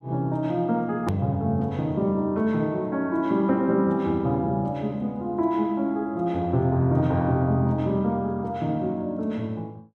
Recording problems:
click at an edit; at 1 s

